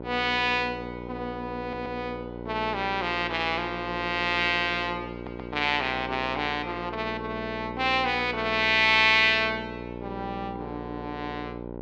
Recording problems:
hum; 60 Hz, harmonics up to 1.1 kHz, SNR 12 dB
audio stuttering; at 1.5 s and at 5 s

